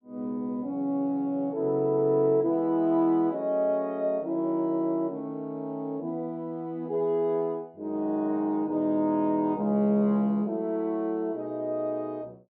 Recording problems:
none

